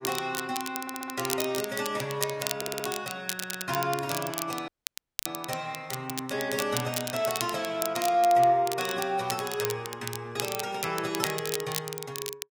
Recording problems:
lossy codec; AAC, log-spectral distance 3 dB
crackling; vinyl, SNR 5 dB
stutter; at 1 s, at 2.5 s and at 3.5 s
dropout; at 4.5 s for 0.5 s

